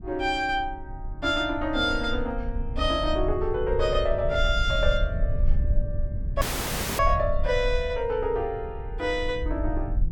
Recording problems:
low-frequency rumble; below 62 Hz, SNR 5 dB
audio cutting out; at 6.5 s for 0.5 s

